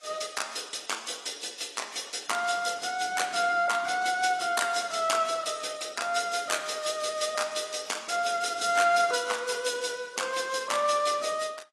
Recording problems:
codec artefacts; AAC, log-spectral distance 6 dB

